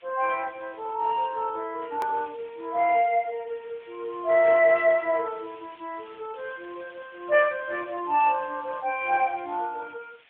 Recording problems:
telephone audio; 320 Hz to 3.7 kHz, AMR-NB
hiss; SNR 27 dB
hard cut with a click; at 2 s

